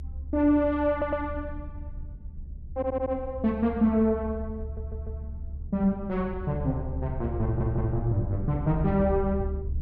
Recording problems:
low-frequency rumble; below 74 Hz, SNR 9 dB
audio stuttering; 4 times, first at 1 s

